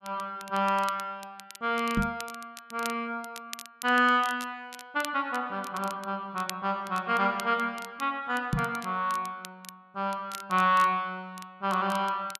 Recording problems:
crackle; vinyl, SNR 17 dB
microphone thump; at 2 s and at 8.5 s; peak +4 dB vs average level

